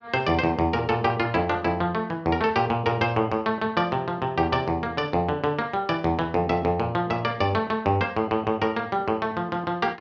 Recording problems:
none

